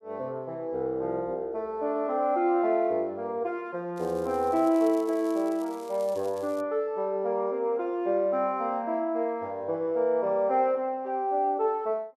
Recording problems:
crackling; from 4 to 6.5 s; loose cable, SNR 24 dB

